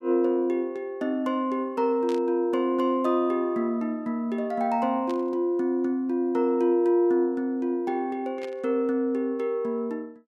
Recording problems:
burst of static; at 2 s, at 5 s and at 8.5 s; peak -12 dB vs average level

